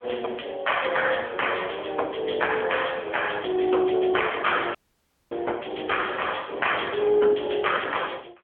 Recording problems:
telephone audio; 280 Hz to 3.3 kHz, AMR-NB
dropout; at 5 s for 0.5 s

